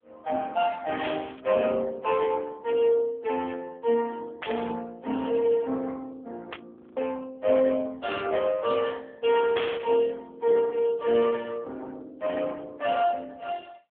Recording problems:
phone line; 240 Hz to 3.4 kHz, AMR-NB
burst of static; 4 times, first at 1 s; peak -2 dB vs average level
audio freezing; at 7 s

